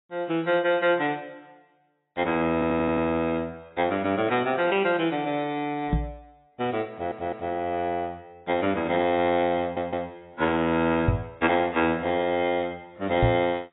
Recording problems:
lossy compression; AAC, log-spectral distance 3 dB, nothing above 3.5 kHz
audio stuttering; at 2.5 s, at 7 s and at 9.5 s
microphone bump; at 6 s, at 11 s and at 13 s; peak +6 dB vs average level

